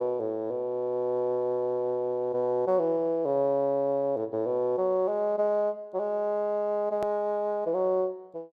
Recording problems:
edit click; at 7 s

